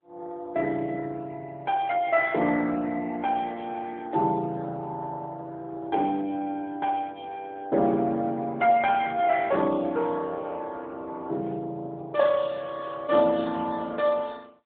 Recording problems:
telephone audio; 190 Hz to 3.6 kHz, AMR-NB

